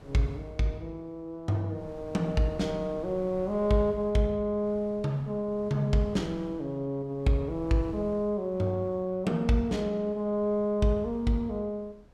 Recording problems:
wind noise; below 340 Hz, SNR 22 dB

